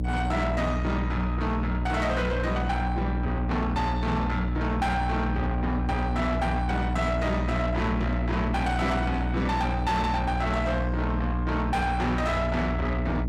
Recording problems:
distorted audio; soft clipping, signal-to-distortion ratio 10 dB
hum; 60 Hz, harmonics up to 1.3 kHz, SNR 1 dB

